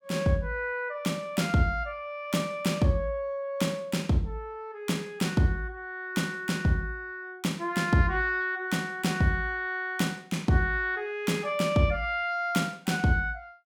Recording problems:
none

